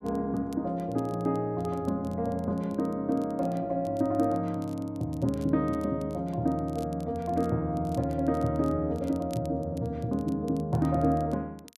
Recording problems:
crackling; vinyl, SNR 27 dB

